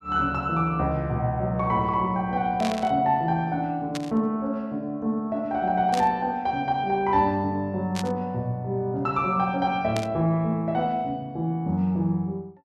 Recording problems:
static burst; 5 times, first at 2.5 s; peak -4 dB vs average level

